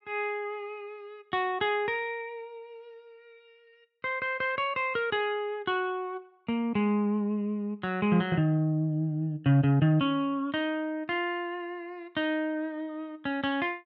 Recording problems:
none

